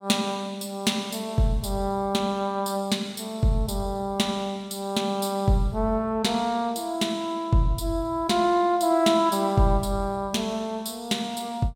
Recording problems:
none

